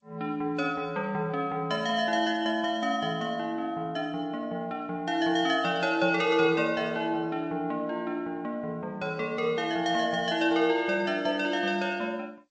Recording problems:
lossy compression; G.722, then MP3, log-spectral distance 2 dB, nothing above 7.8 kHz

